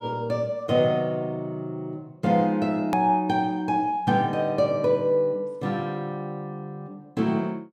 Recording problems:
click at an edit; at 3 s

